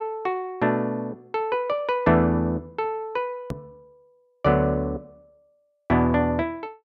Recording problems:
click at an edit; at 3.5 s

